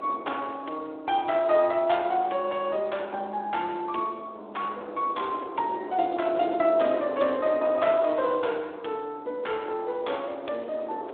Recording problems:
telephone audio; 260 Hz to 3.7 kHz, Speex
wind noise; below 700 Hz, SNR 13 dB

